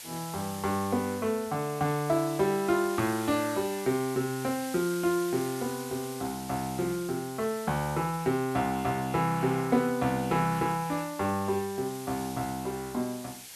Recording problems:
hiss; slope +2 dB per octave, SNR 13 dB

